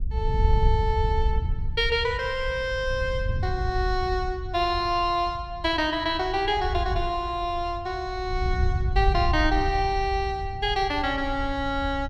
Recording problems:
wind on the microphone; below 82 Hz, SNR 4 dB

